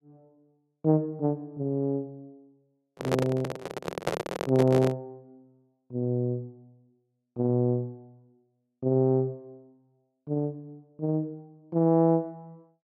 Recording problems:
microphone handling noise; from 3 to 5 s; peak +4 dB vs average level

